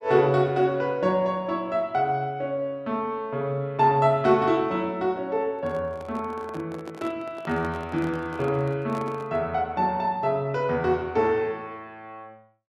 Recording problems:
handling noise; from 5.5 to 9.5 s; peak -9 dB vs average level

